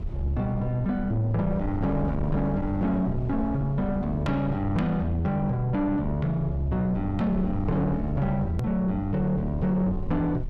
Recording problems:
distorted audio; soft clipping, signal-to-distortion ratio 10 dB
low-frequency rumble; below 100 Hz, SNR 10 dB
edit click; at 8.5 s

